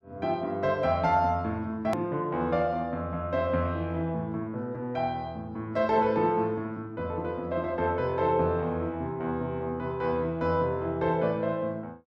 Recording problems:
click at an edit; at 2 s

